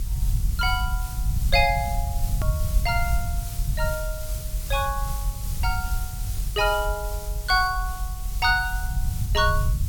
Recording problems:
background hiss; SNR 12 dB
low-frequency rumble; below 76 Hz, SNR 3 dB
hard cut with a click; at 2.5 s

